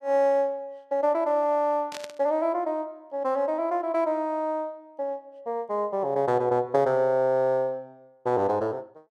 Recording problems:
static burst; at 2 s; peak -7 dB vs average level

